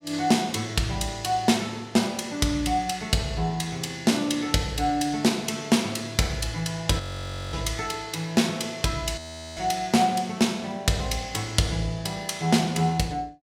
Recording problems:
frozen audio; at 7 s for 0.5 s and at 9 s

